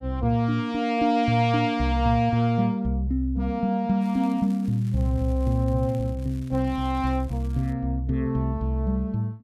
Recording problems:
crackling; from 4 to 7.5 s; loose cable, SNR 29 dB

